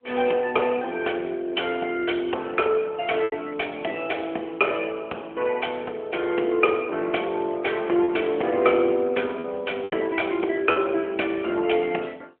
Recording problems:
phone line; 280 Hz to 3.2 kHz, AMR-NB
lost packets; 2% of the sound replaced, filled with repeated pitch periods

